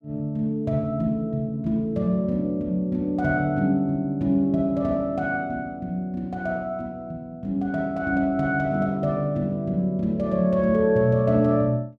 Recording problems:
none

